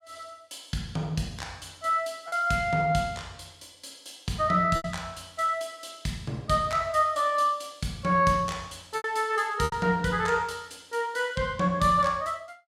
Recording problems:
lost packets; 2% of the sound replaced, filled with repeated pitch periods

